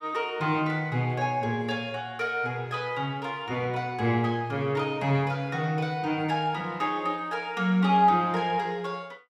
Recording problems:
none

